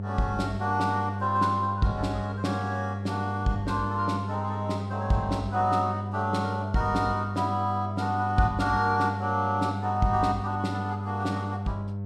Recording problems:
hum; 50 Hz, harmonics up to 700 Hz, SNR 5 dB

